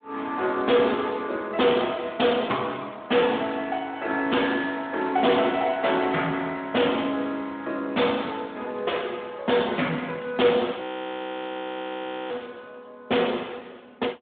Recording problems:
phone line; 220 Hz to 3.6 kHz, Speex
distortion; hard clipping, signal-to-distortion ratio 12 dB
frozen audio; at 11 s for 1.5 s

